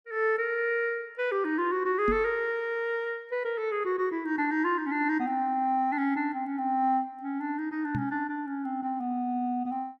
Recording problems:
microphone thump; at 2 s and at 8 s; peak +1 dB vs average level

